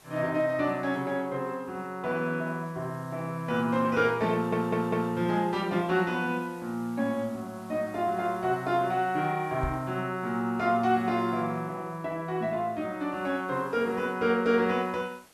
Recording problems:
hiss; slope -2 dB per octave, SNR 27 dB
stutter; at 4.5 s
microphone thump; at 9.5 s; peak -1 dB vs average level

